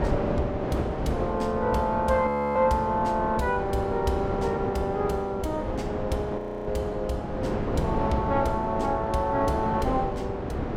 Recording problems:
wind noise; below 580 Hz, SNR 4 dB
audio freezing; at 2.5 s and at 6.5 s

